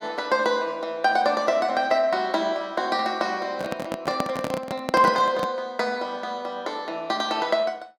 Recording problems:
microphone handling noise; from 3.5 to 5.5 s; peak +1 dB vs average level

